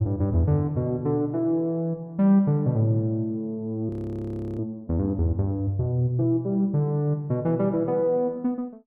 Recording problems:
audio freezing; at 4 s for 0.5 s

